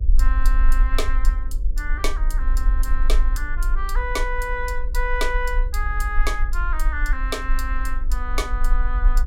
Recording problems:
electrical hum; 60 Hz, harmonics up to 540 Hz, SNR 16 dB
rumble; below 42 Hz, strongest tone 22 Hz, SNR -4 dB

